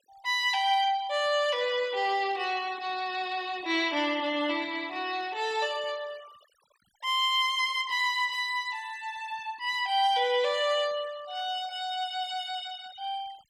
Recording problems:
denoising artefacts; signal-to-artefact ratio 23 dB

